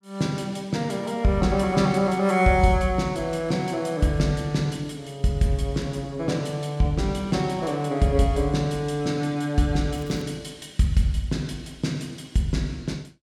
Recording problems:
crackle; at 10 s; loose cable, SNR 27 dB

